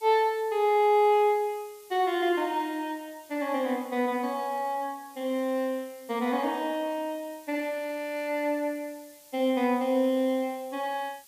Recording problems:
hiss; SNR 24 dB

